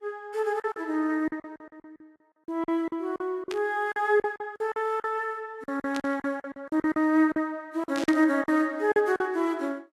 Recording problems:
lossy compression; Vorbis, log-spectral distance 2 dB, nothing above 13.1 kHz
lost packets; 14% of the sound replaced, filled with silence
burst of static; at 3.5 s, at 6 s and at 8 s; peak -6 dB vs average level

